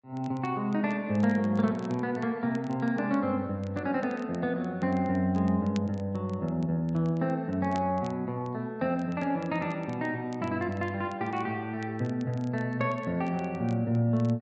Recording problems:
treble missing; nothing above 8 kHz
crackling; vinyl, SNR 27 dB

